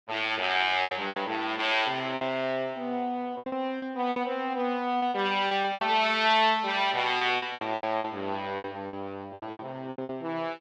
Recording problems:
packet loss; 13% of the sound replaced, filled with repeated pitch periods

